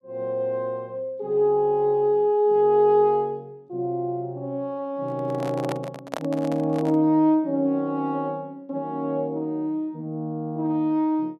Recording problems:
handling noise; from 5 to 7 s; peak -3 dB vs average level

